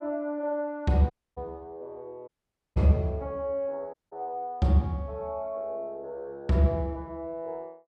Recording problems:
dropout; at 1 s, at 2.5 s and at 4 s

